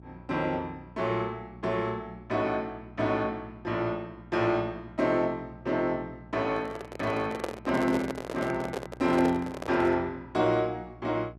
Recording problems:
hum; 60 Hz, harmonics up to 780 Hz, SNR 20 dB
microphone handling noise; from 6.5 to 10 s; peak +2 dB vs average level

